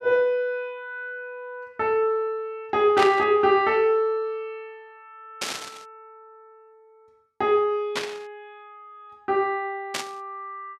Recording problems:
burst of static; 4 times, first at 3 s; peak +2 dB vs average level

